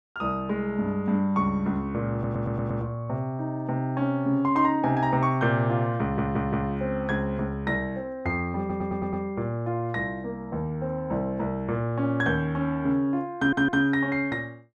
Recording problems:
stutter; 4 times, first at 2 s

